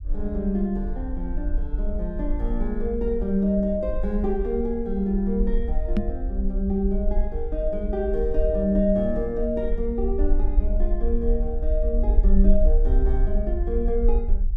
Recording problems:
rumble; below 46 Hz, SNR 1 dB
knock on the microphone; at 6 s; peak +6 dB vs average level

